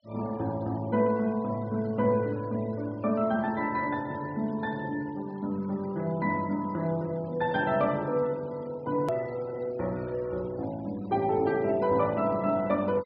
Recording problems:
low-pass filter; nothing above 5.5 kHz
denoising artefacts; signal-to-artefact ratio 24 dB
hard cut with a click; at 9 s

